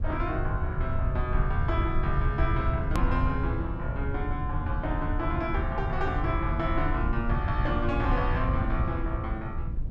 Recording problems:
low-frequency rumble; below 98 Hz, SNR -1 dB
click at an edit; at 3 s

